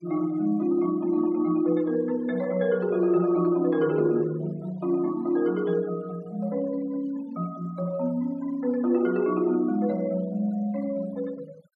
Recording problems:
noise reduction artefacts; signal-to-artefact ratio 24 dB

